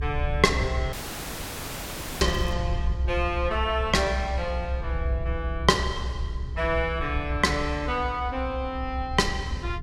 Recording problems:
hum; 60 Hz, harmonics up to 420 Hz, SNR 20 dB
low-frequency rumble; below 70 Hz, strongest tone 62 Hz, SNR 4 dB
audio cutting out; at 1 s for 1.5 s
crackle; at 2 s; loose cable, SNR 23 dB

